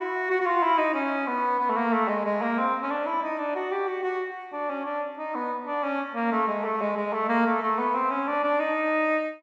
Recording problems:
none

